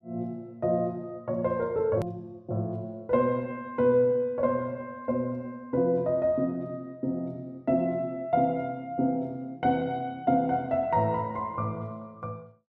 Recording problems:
hard cut with a click; at 2 s

